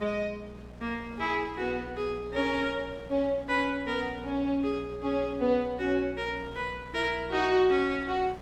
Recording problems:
hum; 60 Hz, harmonics up to 720 Hz, SNR 19 dB
wind noise; below 980 Hz, SNR 22 dB

